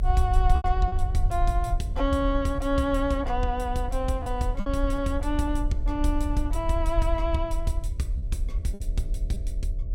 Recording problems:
hum; 60 Hz, harmonics up to 660 Hz, SNR 18 dB
low-frequency rumble; below 58 Hz, SNR 1 dB
lost packets; 4% of the sound replaced, filled with repeated pitch periods

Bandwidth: 16 kHz